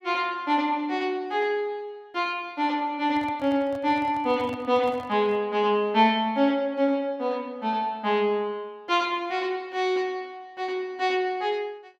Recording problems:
microphone handling noise; from 3 to 5.5 s; peak -11 dB vs average level

